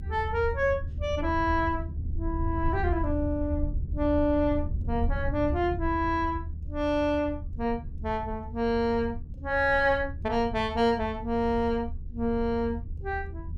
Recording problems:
low-frequency rumble; below 80 Hz, SNR 7 dB

